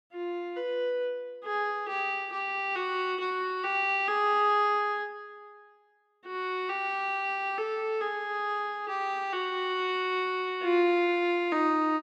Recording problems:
none

